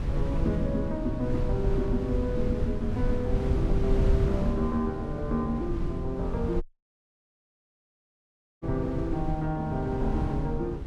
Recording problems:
wind on the microphone; below 110 Hz, SNR 1 dB
audio cutting out; at 6.5 s for 2 s

